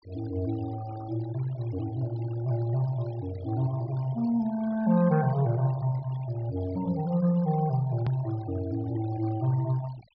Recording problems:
treble cut off; nothing above 5.5 kHz
noise reduction artefacts; signal-to-artefact ratio 20 dB
hard cut with a click; at 8 s

